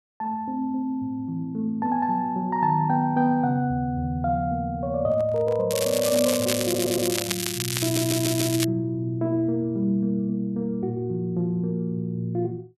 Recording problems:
microphone handling noise; from 5 to 7.5 s; peak -7 dB vs average level
crackle; from 5.5 to 8.5 s; loose cable, SNR 3 dB
audio stuttering; at 6.5 s and at 8 s

